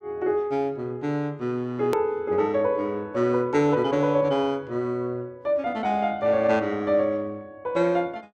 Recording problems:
hard cut with a click; at 2 s

